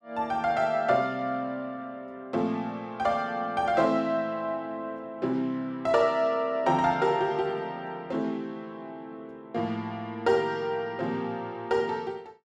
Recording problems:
none

